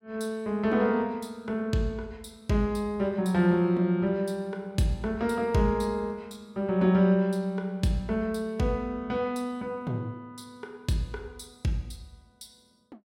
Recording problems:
none

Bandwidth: 16 kHz